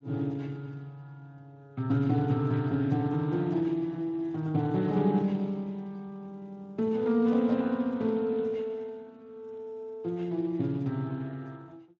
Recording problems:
lossy compression; Speex, log-spectral distance 2 dB

